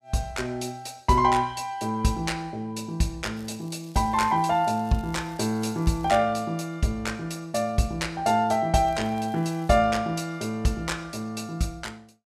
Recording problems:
crackle; from 3.5 to 6 s and at 9 s; loose cable, SNR 27 dB

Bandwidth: 14.5 kHz